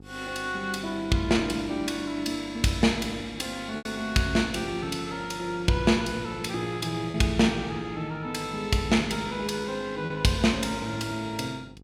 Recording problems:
hum; 50 Hz, harmonics up to 850 Hz, SNR 21 dB
packet loss; 1.6% of the sound replaced, filled with repeated pitch periods

